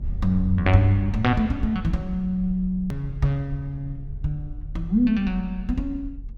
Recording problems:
low-frequency rumble; below 66 Hz, SNR 11 dB
hard cut with a click; at 3 s

